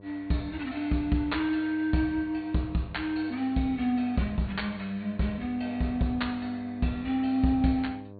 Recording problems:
treble cut off; nothing above 4.5 kHz
electrical hum; 50 Hz, harmonics up to 1.1 kHz, SNR 18 dB

